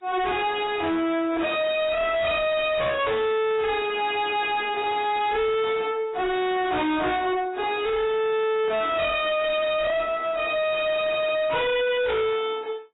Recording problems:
lossy compression; AAC, log-spectral distance 4 dB, nothing above 3.8 kHz
distortion; soft clipping, signal-to-distortion ratio 5 dB

